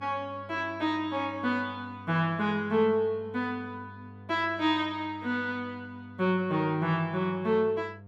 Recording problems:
hum; 50 Hz, harmonics up to 900 Hz, SNR 19 dB

